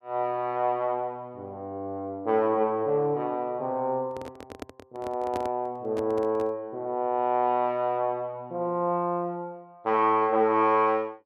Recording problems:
microphone handling noise; from 4 to 6.5 s; peak -5 dB vs average level

